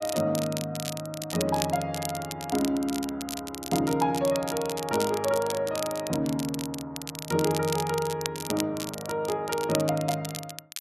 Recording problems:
crackle; vinyl, SNR 8 dB

